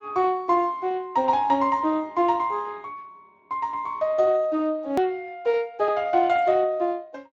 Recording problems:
codec artefacts; Speex, log-spectral distance 2 dB
hard cut with a click; at 5 s

